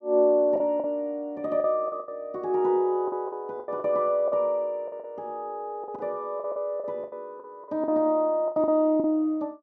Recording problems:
packet loss; 12% of the sound replaced, filled with the last packet

